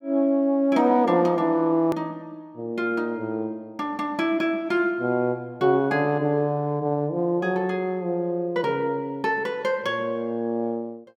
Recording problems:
edit click; at 2 s

